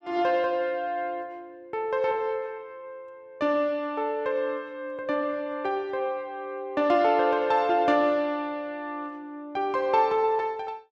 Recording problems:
none

